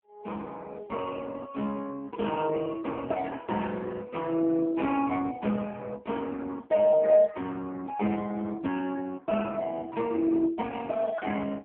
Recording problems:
phone line; 170 Hz to 3.3 kHz, AMR-NB

